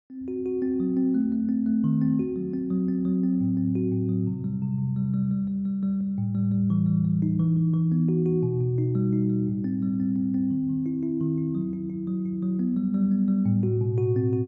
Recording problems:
none

